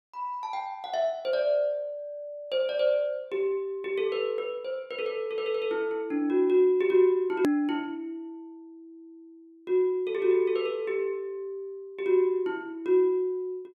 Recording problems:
hard cut with a click; at 7.5 s

